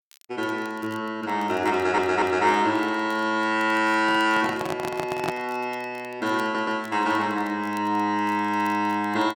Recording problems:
crackle; vinyl, SNR 27 dB
stutter; at 2 s and at 6.5 s
microphone handling noise; from 4 to 5.5 s; peak 0 dB vs average level

